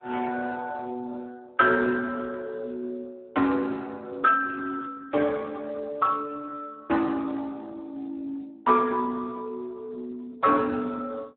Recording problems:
telephone audio; 220 Hz to 3.2 kHz, Speex

